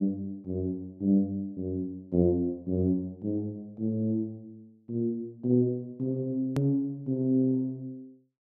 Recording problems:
hard cut with a click; at 6.5 s

